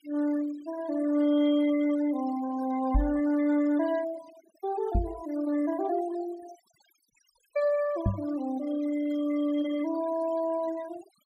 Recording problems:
noise reduction artefacts; signal-to-artefact ratio 18 dB
microphone bump; at 3 s, at 5 s and at 8 s; peak +5 dB vs average level

